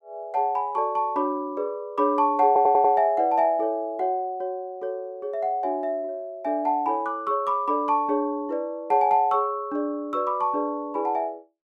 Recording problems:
audio stuttering; at 2.5 s

